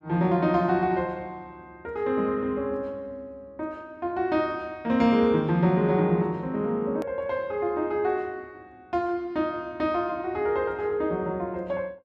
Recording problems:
hard cut with a click; at 7 s

